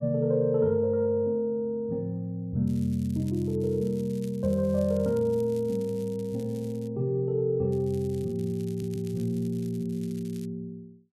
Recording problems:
crackling; at 2.5 s, from 3.5 to 7 s and from 7.5 to 10 s; loose cable, SNR 25 dB
stutter; at 8.5 s

